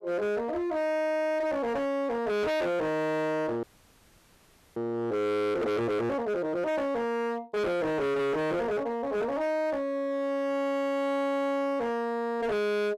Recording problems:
distortion; hard clipping, signal-to-distortion ratio 6 dB
audio freezing; at 3.5 s for 1 s

